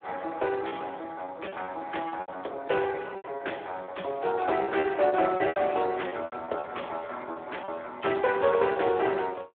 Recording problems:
telephone audio; 300 Hz to 3.5 kHz, Speex
packet loss; 11% of the sound replaced, filled with repeated pitch periods

